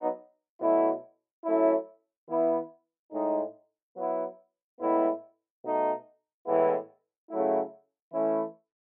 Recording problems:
none

